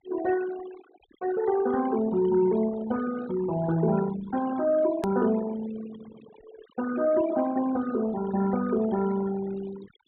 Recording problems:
low-pass filter; nothing above 4 kHz
noise reduction artefacts; signal-to-artefact ratio 14 dB
click at an edit; at 5 s

